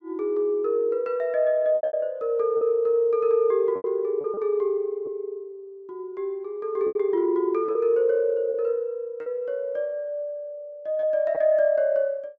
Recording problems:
lost packets; 5% of the sound replaced, filled with repeated pitch periods

